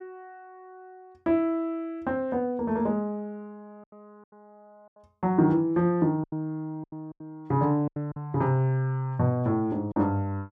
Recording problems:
lost packets; 5% of the sound replaced, filled with silence

